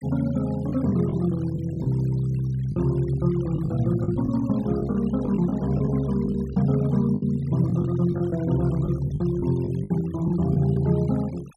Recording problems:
denoising artefacts; signal-to-artefact ratio 22 dB
packet loss; 8% of the sound replaced, filled with the last packet

